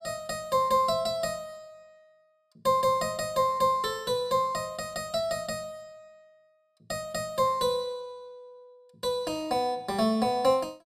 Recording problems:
none

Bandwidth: 14.5 kHz